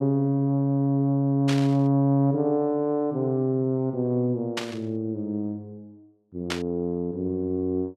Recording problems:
static burst; at 1.5 s, at 4.5 s and at 6.5 s; peak 0 dB vs average level

